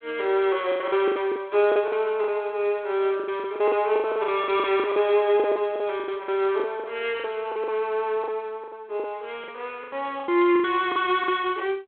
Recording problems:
telephone audio; 280 Hz to 3.6 kHz, G.726
packet loss; 16% of the sound replaced, filled with the last packet

